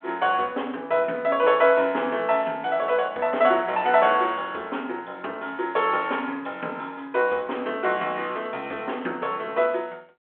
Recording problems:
telephone audio; 280 Hz to 3.3 kHz, G.726

